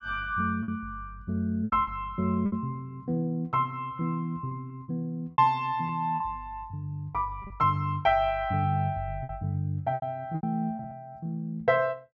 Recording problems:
lost packets; 7% of the sound replaced, filled with repeated pitch periods

